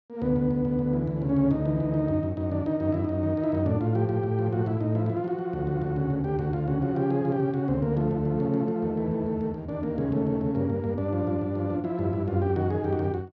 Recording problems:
none

